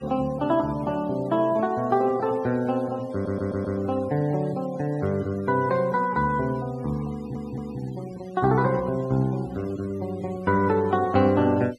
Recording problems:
denoising artefacts; signal-to-artefact ratio 23 dB
audio stuttering; at 3 s and at 7 s

